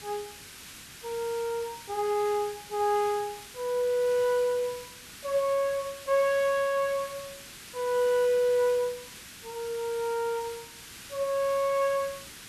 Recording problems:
hiss; SNR 15 dB

